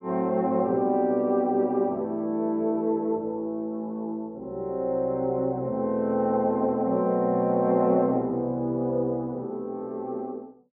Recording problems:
treble cut off; nothing above 5.5 kHz

